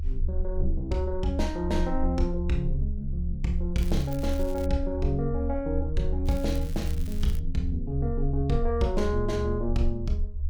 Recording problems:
low-frequency rumble; below 72 Hz, strongest tone 28 Hz, SNR 2 dB
crackle; at 4 s and from 6.5 to 7.5 s; loose cable, SNR 18 dB

